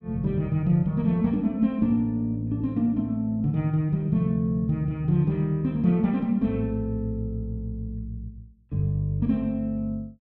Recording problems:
none

